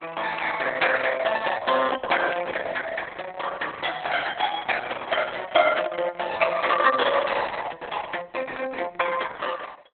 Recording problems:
lossy codec; Opus, log-spectral distance 6 dB, nothing above 3.7 kHz

